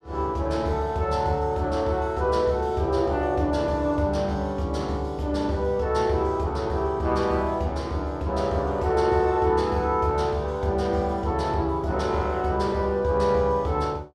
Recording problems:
none

